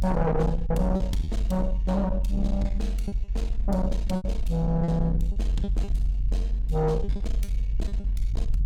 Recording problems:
distortion; soft clipping, signal-to-distortion ratio 10 dB
low-frequency rumble; below 48 Hz, strongest tone 46 Hz, SNR 2 dB
lost packets; 7% of the sound replaced, filled with repeated pitch periods

